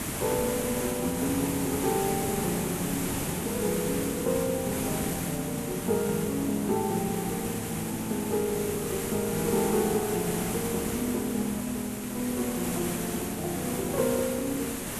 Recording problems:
background hiss; slope -4 dB per octave, SNR 3 dB

